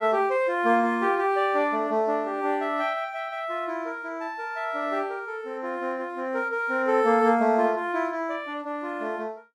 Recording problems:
none

